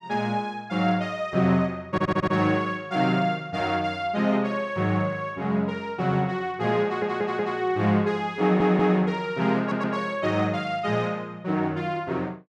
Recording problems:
stutter; 4 times, first at 2 s

